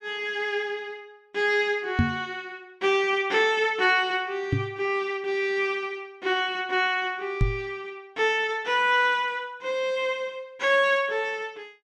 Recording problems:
microphone bump; at 2 s, at 4.5 s and at 7.5 s; peak +6 dB vs average level

